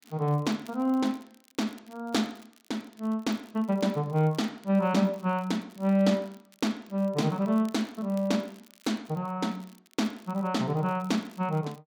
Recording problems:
crackle; vinyl, SNR 28 dB

